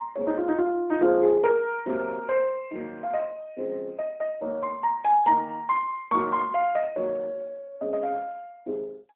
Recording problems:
phone line; 240 Hz to 2.8 kHz, AMR-NB

